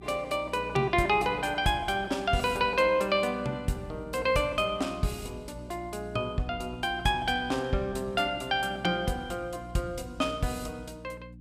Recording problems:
hum; 60 Hz, harmonics up to 300 Hz, SNR 18 dB

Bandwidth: 14.5 kHz